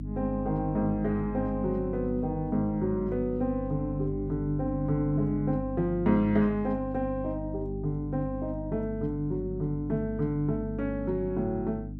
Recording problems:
hum; 50 Hz, harmonics up to 300 Hz, SNR 7 dB

